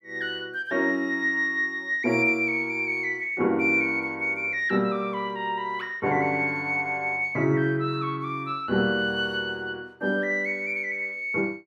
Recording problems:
none

